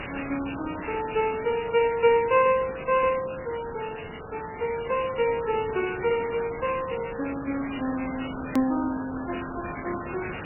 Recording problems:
lossy codec; MP3, log-spectral distance 18 dB, nothing above 2.3 kHz
background hiss; SNR 11 dB
edit click; at 8.5 s

